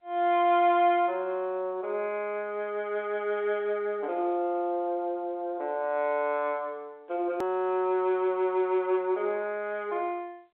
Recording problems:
phone line; 300 Hz to 3.8 kHz, G.711
hard cut with a click; at 7.5 s

